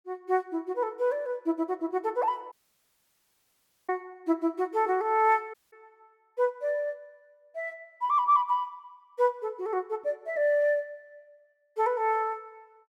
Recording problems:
dropout; at 2.5 s for 1.5 s and at 5.5 s

